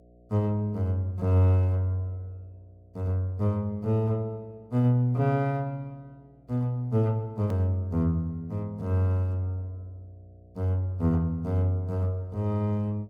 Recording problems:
electrical hum; 60 Hz, harmonics up to 720 Hz, SNR 31 dB
click at an edit; at 7.5 s

